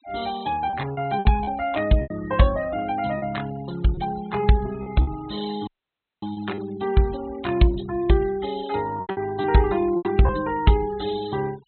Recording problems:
treble missing; nothing above 4.1 kHz
noise reduction artefacts; signal-to-artefact ratio 20 dB
lost packets; 7% of the sound replaced, filled with repeated pitch periods
dropout; at 5.5 s for 0.5 s

